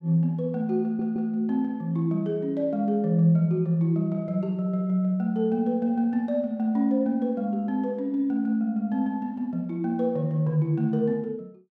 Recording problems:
audio stuttering; at 1 s

